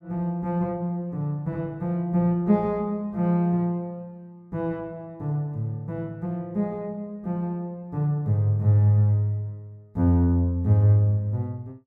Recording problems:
none

